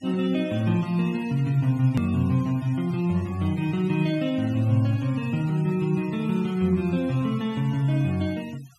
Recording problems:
noise reduction artefacts; signal-to-artefact ratio 23 dB
click at an edit; at 2 s

